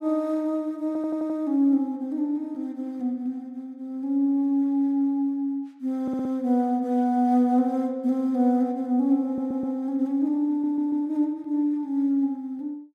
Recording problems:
audio stuttering; 4 times, first at 1 s

